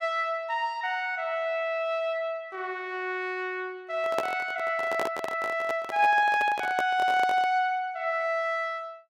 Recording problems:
microphone handling noise; from 4 to 7.5 s; peak +2 dB vs average level

